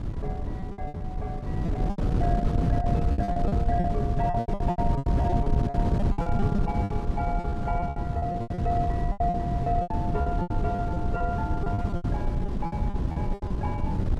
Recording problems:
wind noise; below 180 Hz, SNR -5 dB
packet loss; 17% of the sound replaced, filled with repeated pitch periods

